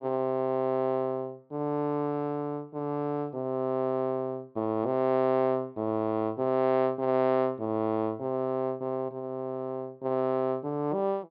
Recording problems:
treble missing; nothing above 5.5 kHz

